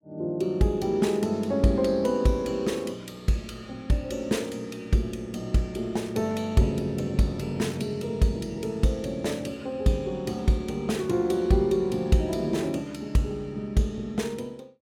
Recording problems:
none

